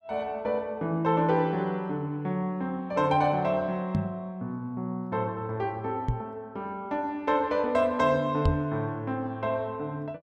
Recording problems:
microphone bump; at 4 s, at 6 s and at 8.5 s; peak +6 dB vs average level

